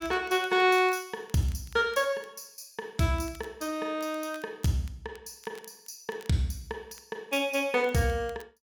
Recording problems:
crackle; vinyl, SNR 27 dB

